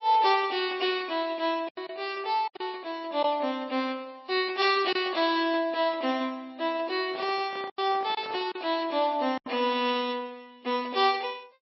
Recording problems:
lossy codec; MP3, log-spectral distance 2 dB, nothing above 5.5 kHz
lost packets; 4% of the sound replaced, filled with silence
microphone handling noise; from 7 to 8.5 s; peak -11 dB vs average level

